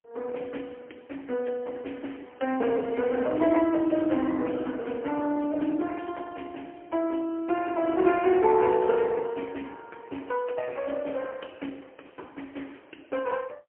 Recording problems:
phone line; 240 Hz to 3.1 kHz, AMR-NB, then MP3

